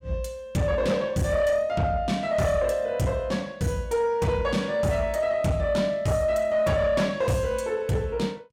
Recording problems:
distorted audio; soft clipping, signal-to-distortion ratio 12 dB

